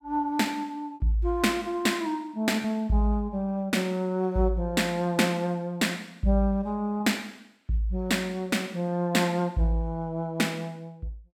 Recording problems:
packet loss; 1.1% of the sound replaced, filled with repeated pitch periods

